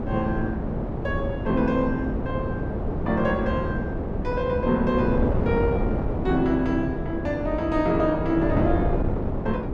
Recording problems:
hum; 60 Hz, harmonics up to 1.3 kHz, SNR 19 dB
wind noise; below 400 Hz, SNR 2 dB

